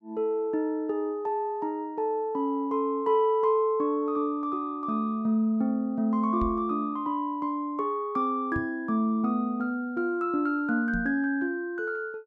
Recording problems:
microphone bump; at 6.5 s, at 8.5 s and at 11 s; peak -3 dB vs average level

